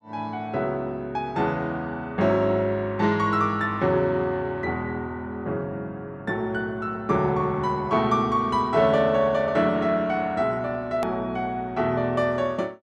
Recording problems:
hard cut with a click; at 11 s

